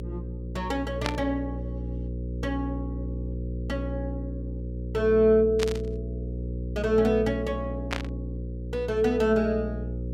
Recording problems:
hum; 60 Hz, harmonics up to 540 Hz, SNR 7 dB
static burst; at 1 s, at 5.5 s and at 8 s; peak +1 dB vs average level

